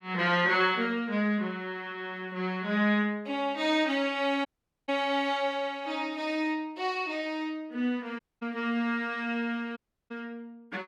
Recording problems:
dropout; at 4.5 s, at 8 s and at 10 s

